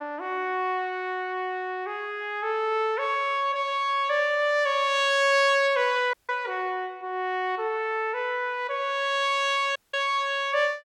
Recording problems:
dropout; at 6 s and at 10 s

